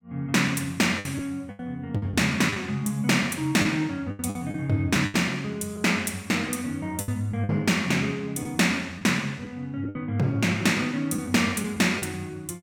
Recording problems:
lost packets; 7% of the sound replaced, filled with the last packet

